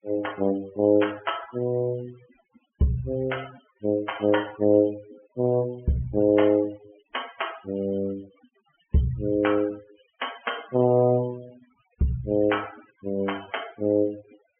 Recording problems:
treble missing; nothing above 3.2 kHz
denoising artefacts; signal-to-artefact ratio 21 dB

